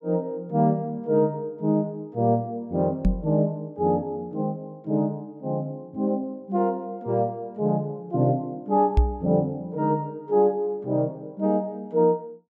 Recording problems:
microphone thump; at 3 s and at 9 s; peak +9 dB vs average level

